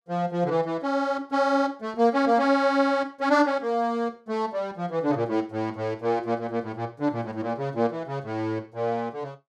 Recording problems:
none

